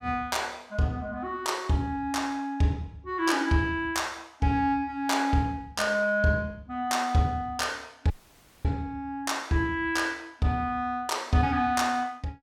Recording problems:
dropout; at 8 s for 0.5 s

